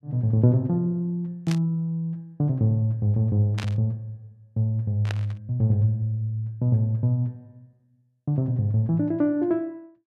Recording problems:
static burst; at 1.5 s, at 3.5 s and at 5 s; peak -6 dB vs average level

